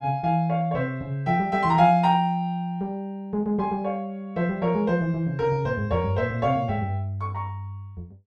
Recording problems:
none

